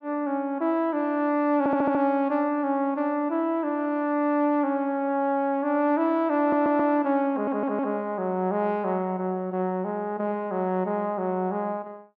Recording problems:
audio stuttering; at 1.5 s, at 6.5 s and at 7.5 s

